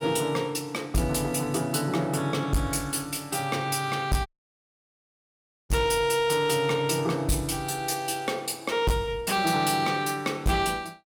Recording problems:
distorted audio; soft clipping, signal-to-distortion ratio 11 dB
dropout; at 4.5 s for 1.5 s

